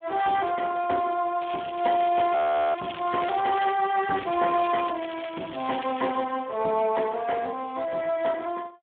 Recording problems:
phone line; 240 Hz to 3.4 kHz, Speex
crackle; from 1.5 to 3.5 s and from 4 to 6 s; loose cable, SNR 14 dB
audio freezing; at 2.5 s

